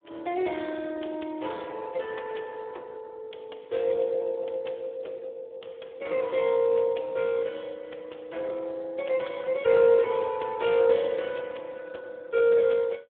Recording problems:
phone line; 300 Hz to 3.4 kHz, Speex

